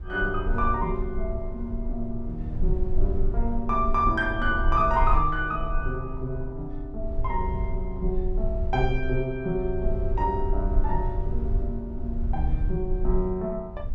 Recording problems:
rumble; below 54 Hz, strongest tone 18 Hz, SNR 2 dB

